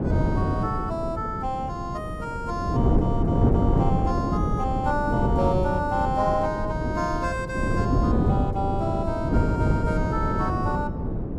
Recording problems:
wind on the microphone; below 290 Hz, SNR -2 dB

